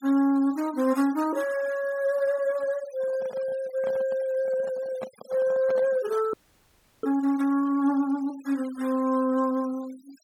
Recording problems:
denoising artefacts; signal-to-artefact ratio 22 dB
microphone handling noise; from 3 to 6 s; peak -6 dB vs average level
audio freezing; at 6.5 s for 0.5 s

